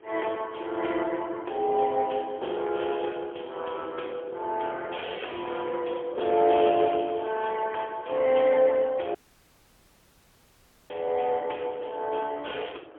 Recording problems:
phone line; 300 Hz to 3.4 kHz, AMR-NB, then MP3
wind noise; below 730 Hz, SNR 22 dB
dropout; at 9 s for 2 s

